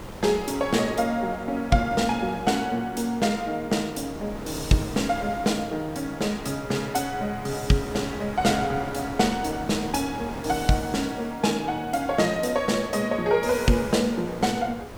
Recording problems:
background hiss; SNR 27 dB
wind noise; below 890 Hz, SNR 14 dB

